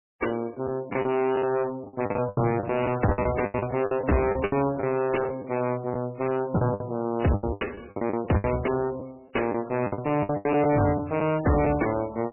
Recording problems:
lossy codec; MP3, log-spectral distance 4 dB, nothing above 2.9 kHz
distorted audio; hard clipping, uneven, signal-to-distortion ratio 5 dB
lost packets; 13% of the sound replaced, filled with the last packet

